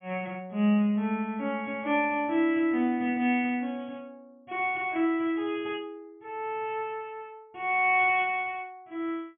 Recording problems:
treble cut off; nothing above 3.4 kHz

